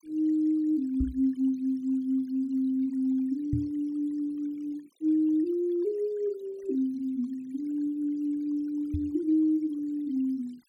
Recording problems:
denoising artefacts; signal-to-artefact ratio 28 dB
microphone thump; at 1 s, at 3.5 s and at 9 s; peak +2 dB vs average level

